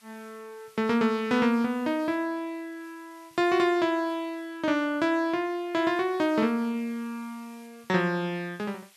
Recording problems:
hiss; slope +2 dB per octave, SNR 29 dB

